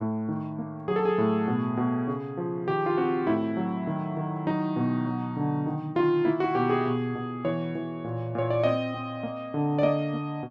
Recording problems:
none

